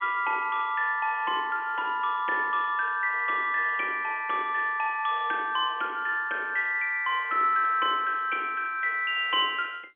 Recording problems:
phone line; 300 Hz to 3.3 kHz, G.711

